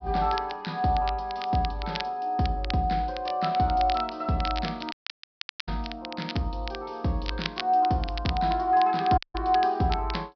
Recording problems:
low-pass filter; nothing above 5.5 kHz
crackling; vinyl, SNR 13 dB
dropout; at 5 s for 1 s and at 9 s

